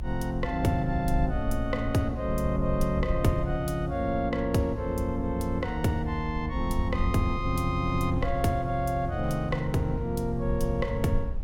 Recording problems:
rumble; below 64 Hz, SNR 7 dB
wind noise; below 290 Hz, SNR 20 dB

